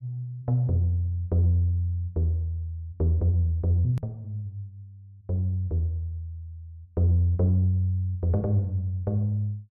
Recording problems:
hard cut with a click; at 4 s

